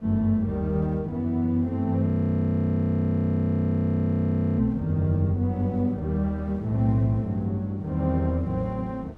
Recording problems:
wind on the microphone; below 360 Hz, SNR 25 dB
frozen audio; at 2 s for 2.5 s

